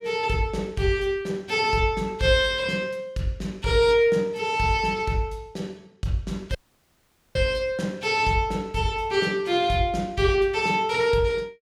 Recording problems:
dropout; at 6.5 s for 1 s

